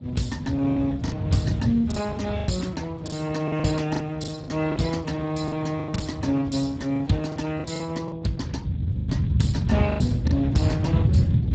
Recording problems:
codec artefacts; Speex, log-spectral distance 4 dB, nothing above 7.6 kHz
wind noise; below 150 Hz, SNR 1 dB
lost packets; 9% of the sound replaced, filled with the last packet

